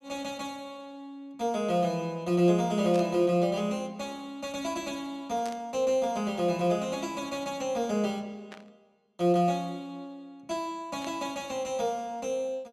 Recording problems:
static burst; 4 times, first at 3 s; peak -9 dB vs average level

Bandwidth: 14 kHz